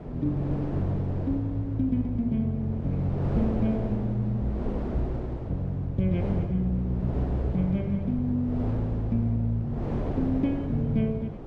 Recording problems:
wind on the microphone; below 450 Hz, SNR 7 dB

